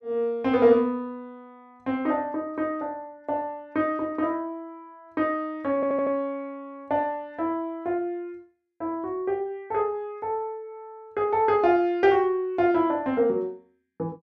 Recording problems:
stutter; at 6 s

